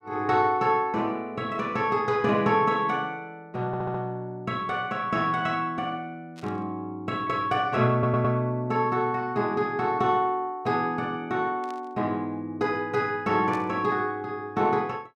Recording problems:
audio stuttering; at 3.5 s and at 8 s
burst of static; at 6.5 s, at 12 s and at 14 s; peak -15 dB vs average level

